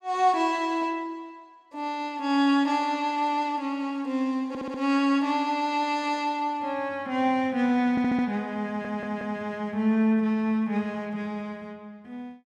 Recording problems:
audio stuttering; at 4.5 s, at 8 s and at 8.5 s

